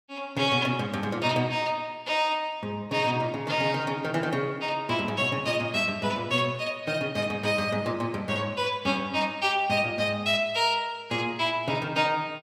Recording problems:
none

